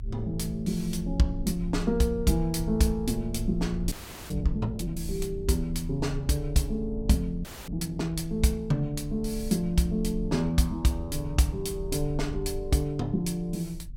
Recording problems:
rumble; below 62 Hz, strongest tone 36 Hz, SNR 10 dB
audio freezing; at 4 s and at 7.5 s

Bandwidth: 16.5 kHz